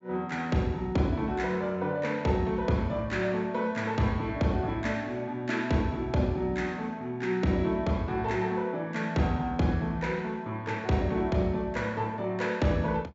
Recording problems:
low-pass filter; nothing above 8 kHz

